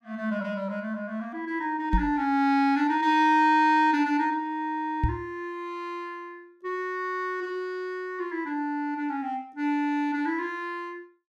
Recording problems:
microphone thump; at 2 s and at 5 s; peak +5 dB vs average level

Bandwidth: 14.5 kHz